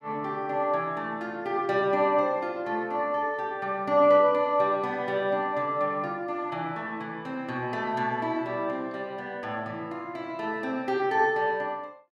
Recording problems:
none

